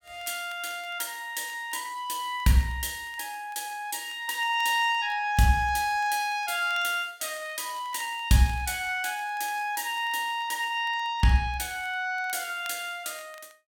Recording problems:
crackling; vinyl, SNR 28 dB

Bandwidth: 18 kHz